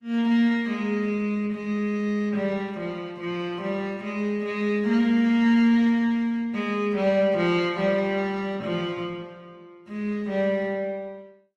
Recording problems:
codec artefacts; Opus, log-spectral distance 2 dB

